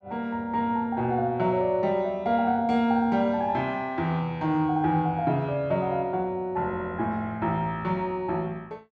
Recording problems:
none

